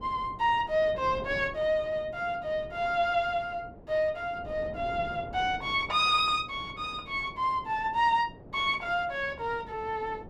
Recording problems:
wind noise; below 490 Hz, SNR 18 dB

